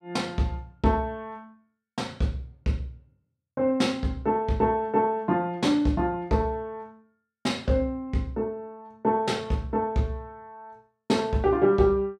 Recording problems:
none

